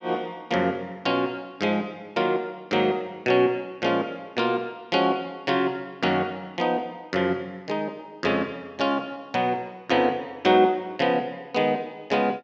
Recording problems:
none

